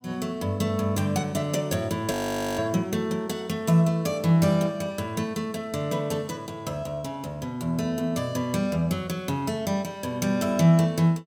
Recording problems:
audio freezing; at 2 s

